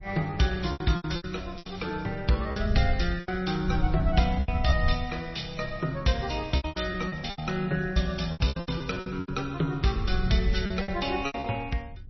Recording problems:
lossy codec; MP3, log-spectral distance 4 dB, nothing above 5.8 kHz
wind on the microphone; below 86 Hz, SNR 6 dB
lost packets; 13% of the sound replaced, filled with repeated pitch periods

